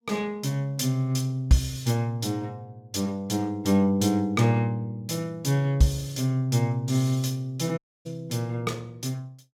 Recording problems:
dropout; at 8 s

